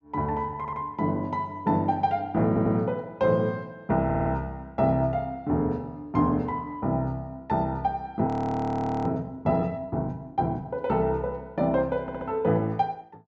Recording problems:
treble cut off; nothing above 8 kHz
stutter; 4 times, first at 0.5 s
audio freezing; at 8.5 s for 1 s

